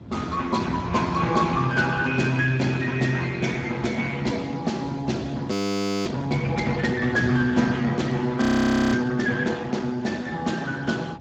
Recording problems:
lossy codec; Speex, log-spectral distance 4 dB, nothing above 18.3 kHz
wind noise; below 260 Hz, SNR 13 dB
audio freezing; at 5.5 s for 0.5 s and at 8.5 s for 0.5 s

